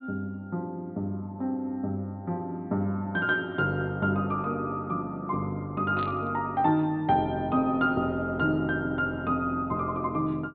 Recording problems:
low-pass filter; nothing above 4.3 kHz
static burst; at 6 s; peak -11 dB vs average level

